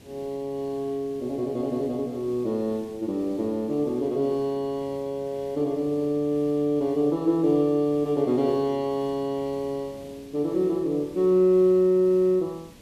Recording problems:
hiss; SNR 24 dB

